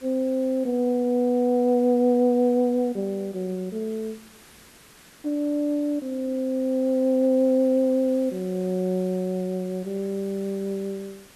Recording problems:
hiss; slope -2 dB per octave, SNR 25 dB

